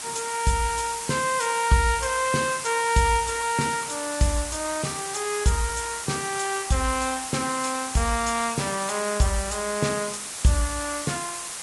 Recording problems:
lossy compression; Vorbis, log-spectral distance 17 dB, nothing above 10.1 kHz
background hiss; slope 0 dB per octave, SNR 6 dB

